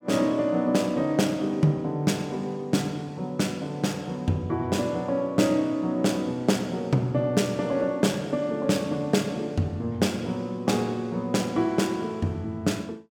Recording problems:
none

